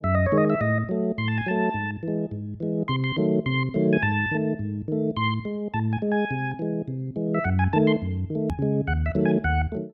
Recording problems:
hard cut with a click; at 8.5 s

